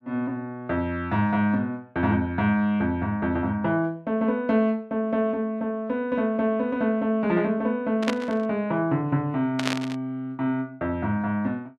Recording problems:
static burst; at 8 s and at 9.5 s; peak +3 dB vs average level

